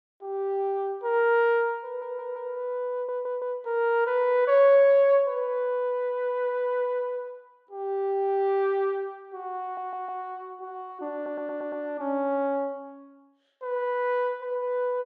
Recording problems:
stutter; 4 times, first at 2 s

